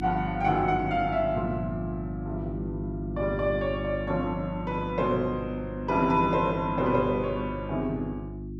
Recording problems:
electrical hum; 50 Hz, harmonics up to 350 Hz, SNR 7 dB

